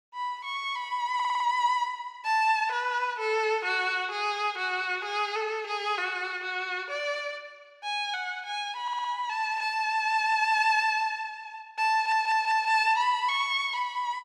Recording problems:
stutter; at 1 s, at 9 s and at 12 s

